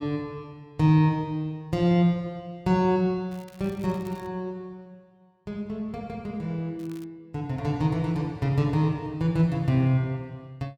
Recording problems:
crackle; at 3.5 s and at 7 s; loose cable, SNR 28 dB

